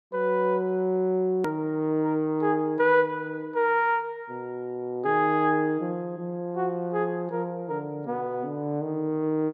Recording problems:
hard cut with a click; at 1.5 s

